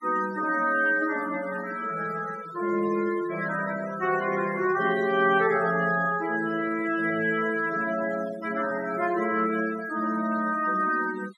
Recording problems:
denoising artefacts; signal-to-artefact ratio 16 dB

